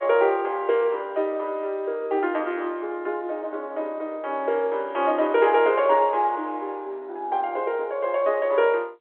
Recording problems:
telephone audio; 280 Hz to 3.4 kHz, G.711

